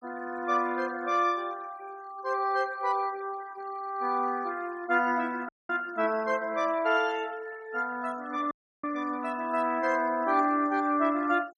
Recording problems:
denoising artefacts; signal-to-artefact ratio 22 dB
audio cutting out; at 5.5 s and at 8.5 s

